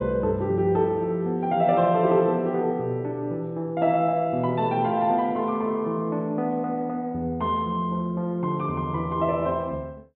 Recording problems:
low-pass filter; nothing above 4 kHz

